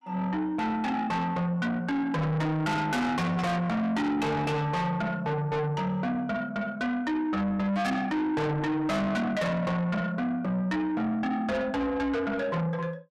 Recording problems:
distorted audio; soft clipping, signal-to-distortion ratio 6 dB

